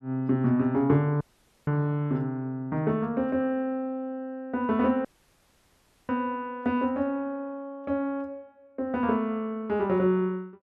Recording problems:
dropout; at 1 s and at 5 s for 1 s

